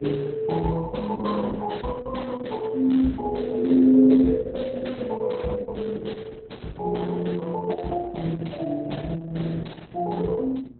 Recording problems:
lossy compression; Opus, log-spectral distance 4 dB, nothing above 4.1 kHz
electrical hum; 60 Hz, harmonics up to 720 Hz, SNR 25 dB

